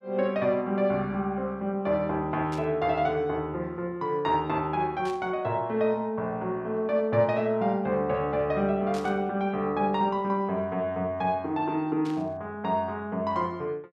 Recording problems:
static burst; 4 times, first at 2.5 s; peak -11 dB vs average level

